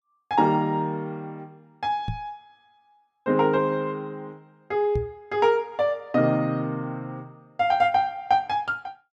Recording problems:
knock on the microphone; at 2 s and at 5 s; peak -1 dB vs average level

